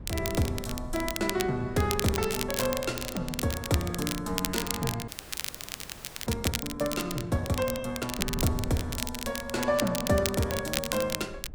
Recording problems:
wind on the microphone; below 110 Hz, SNR 13 dB
crackle; vinyl, SNR 4 dB
audio freezing; at 5 s for 1 s

